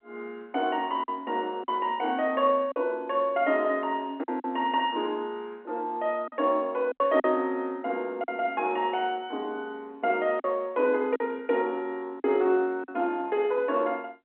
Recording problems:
phone line; 240 Hz to 3.4 kHz, G.711
lost packets; 4% of the sound replaced, filled with silence

